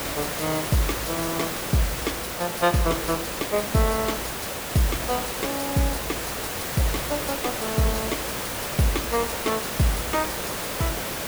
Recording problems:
background hiss; slope -3 dB per octave, SNR 1 dB

